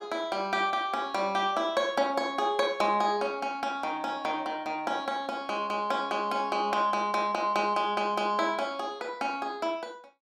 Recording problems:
none

